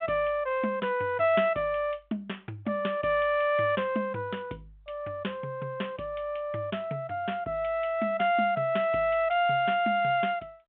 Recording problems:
phone line; 220 Hz to 3.4 kHz, G.726

